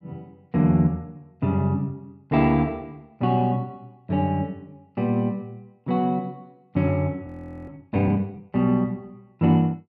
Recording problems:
audio freezing; at 7.5 s

